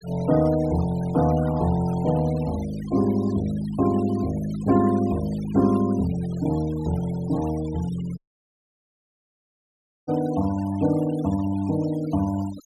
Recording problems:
noise reduction artefacts; signal-to-artefact ratio 19 dB
audio cutting out; at 8 s for 2 s

